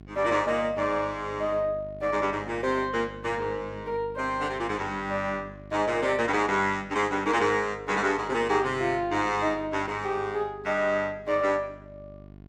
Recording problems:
hum; 50 Hz, harmonics up to 750 Hz, SNR 19 dB

